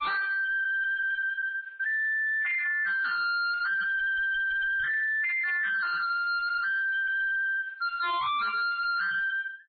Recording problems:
low-pass filter; nothing above 4.2 kHz
codec artefacts; MP3, log-spectral distance 3 dB
distorted audio; hard clipping, signal-to-distortion ratio 6 dB

